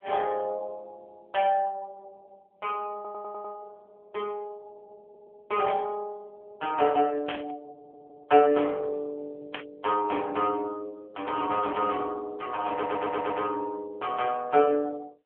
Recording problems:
telephone audio; 320 Hz to 3.3 kHz, AMR-NB
audio stuttering; 4 times, first at 3 s
static burst; at 7.5 s and at 9.5 s; peak -2 dB vs average level

